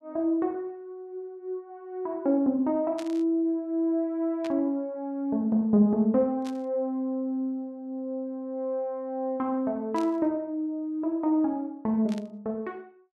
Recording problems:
burst of static; 5 times, first at 3 s; peak -10 dB vs average level

